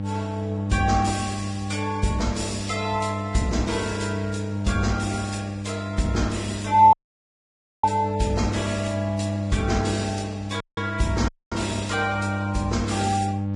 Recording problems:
codec artefacts; Vorbis, log-spectral distance 4 dB
hum; 50 Hz, harmonics up to 800 Hz, SNR 4 dB
audio cutting out; at 7 s for 1 s and at 11 s

